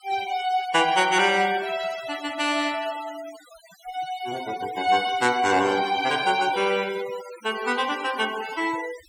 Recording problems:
noise reduction artefacts; signal-to-artefact ratio 16 dB

